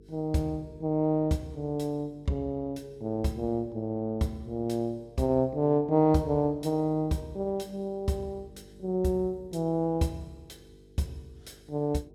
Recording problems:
hum; 50 Hz, harmonics up to 450 Hz, SNR 24 dB

